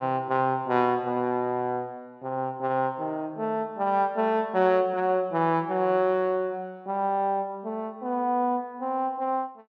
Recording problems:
none

